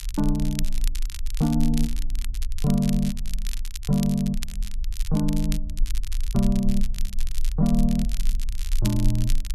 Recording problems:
low-frequency rumble; below 38 Hz, strongest tone 20 Hz, SNR 6 dB
crackle; vinyl, SNR 14 dB

